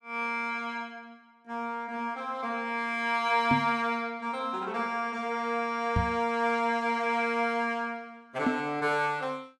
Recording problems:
knock on the microphone; at 3.5 s, at 6 s and at 8.5 s; peak +5 dB vs average level

